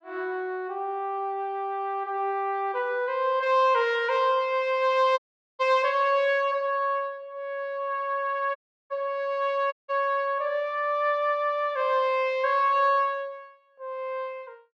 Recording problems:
audio cutting out; at 5 s, at 8.5 s and at 9.5 s

